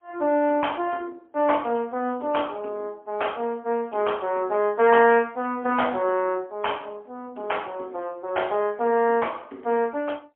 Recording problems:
phone line; 240 Hz to 3.3 kHz, AMR-NB, then MP3

